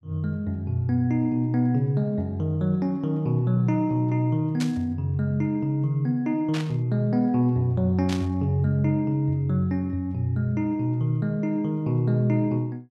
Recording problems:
static burst; at 4.5 s, at 6.5 s and at 8 s; peak -5 dB vs average level

